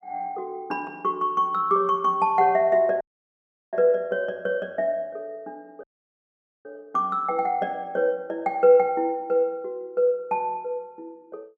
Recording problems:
dropout; at 3 s for 0.5 s and at 6 s for 1 s

